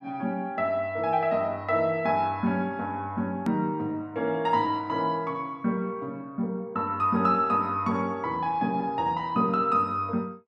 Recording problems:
click at an edit; at 3.5 s

